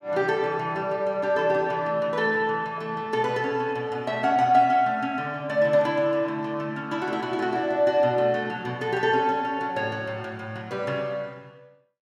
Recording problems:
none

